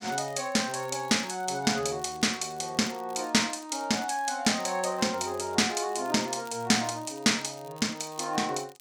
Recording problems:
crackling; vinyl, SNR 26 dB

